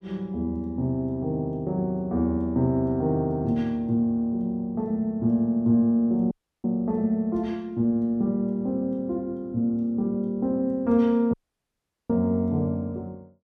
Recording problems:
audio cutting out; at 6.5 s and at 11 s for 1 s

